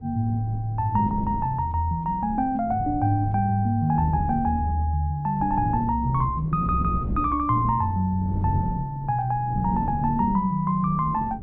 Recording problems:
wind noise; below 210 Hz, SNR 10 dB

